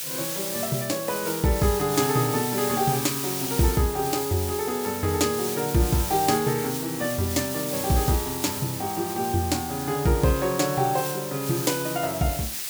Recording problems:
background hiss; SNR 5 dB

